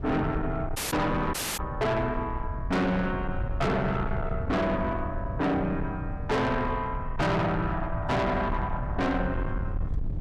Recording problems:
distorted audio; soft clipping, signal-to-distortion ratio 6 dB
rumble; below 140 Hz, SNR 6 dB
dropout; at 1 s and at 1.5 s

